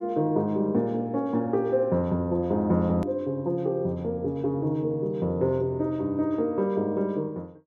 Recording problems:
hard cut with a click; at 3 s

